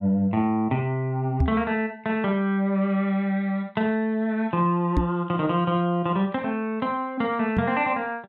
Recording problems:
microphone thump; at 1.5 s, at 5 s and at 7.5 s; peak +4 dB vs average level

